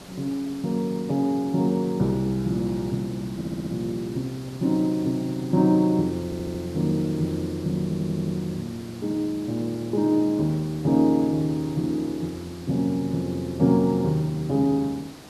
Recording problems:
background hiss; SNR 18 dB
stutter; at 3.5 s, at 6.5 s and at 8 s

